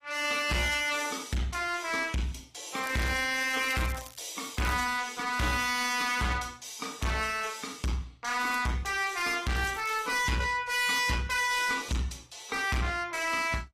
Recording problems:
codec artefacts; AAC, log-spectral distance 5 dB, nothing above 15.1 kHz
distortion; soft clipping, signal-to-distortion ratio 6 dB
crackle; from 3 to 5 s, at 8.5 s and at 9.5 s; loose cable, SNR 18 dB

